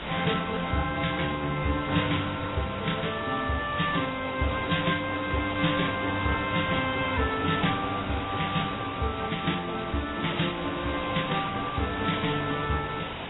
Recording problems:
lossy compression; AAC, then AAC, log-spectral distance 15 dB, nothing above 3.8 kHz
background hiss; SNR 6 dB

